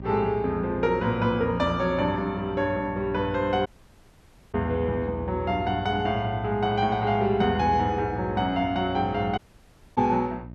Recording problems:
hum; 60 Hz, harmonics up to 660 Hz, SNR 13 dB
dropout; at 3.5 s for 1 s and at 9.5 s for 0.5 s

